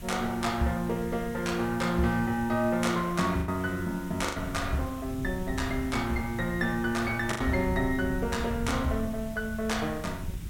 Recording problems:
background hiss; slope -1 dB per octave, SNR 20 dB
wind on the microphone; below 130 Hz, SNR 11 dB
lost packets; 2% of the sound replaced, filled with the last packet

